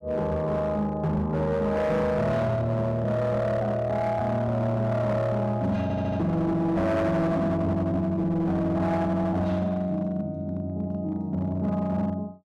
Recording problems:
distortion; hard clipping, signal-to-distortion ratio 10 dB
audio stuttering; at 6 s

